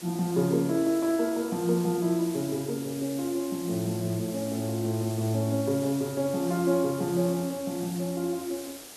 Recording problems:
hiss; SNR 14 dB

